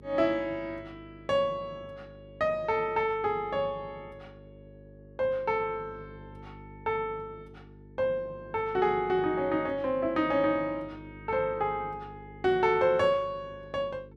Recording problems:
electrical hum; 50 Hz, harmonics up to 450 Hz, SNR 21 dB

